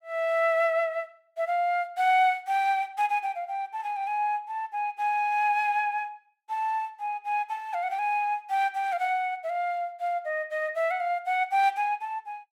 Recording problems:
none

